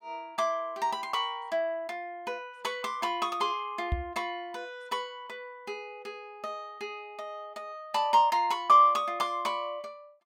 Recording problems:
knock on the microphone; at 4 s; peak +2 dB vs average level

